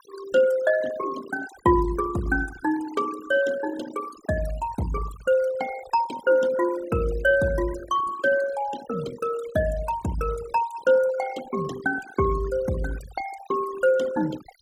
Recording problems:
noise reduction artefacts; signal-to-artefact ratio 15 dB

